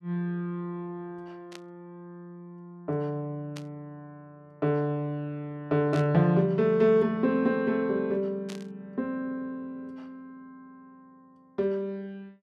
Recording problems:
burst of static; 4 times, first at 1.5 s; peak -10 dB vs average level

